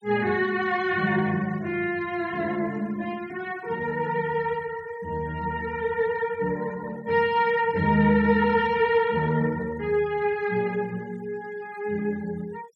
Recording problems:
noise reduction artefacts; signal-to-artefact ratio 23 dB

